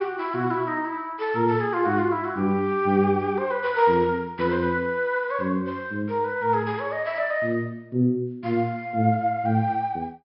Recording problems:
low-pass filter; nothing above 5.3 kHz

